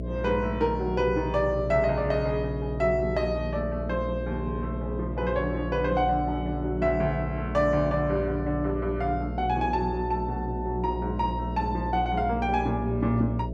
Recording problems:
electrical hum; 60 Hz, harmonics up to 660 Hz, SNR 6 dB

